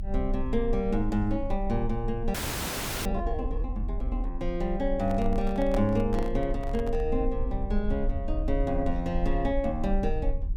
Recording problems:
low-frequency rumble; below 46 Hz, strongest tone 24 Hz, SNR 4 dB
frozen audio; at 2.5 s for 0.5 s
handling noise; from 5 to 7 s; peak -3 dB vs average level

